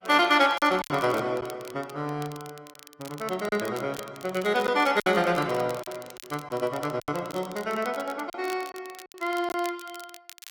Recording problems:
lossy compression; Opus, log-spectral distance 2 dB, nothing above 15.5 kHz
crackling; vinyl, SNR 19 dB
lost packets; 6% of the sound replaced, filled with silence

